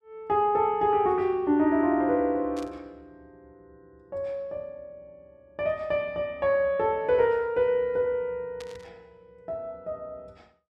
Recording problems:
static burst; at 2.5 s and at 8.5 s; peak -14 dB vs average level

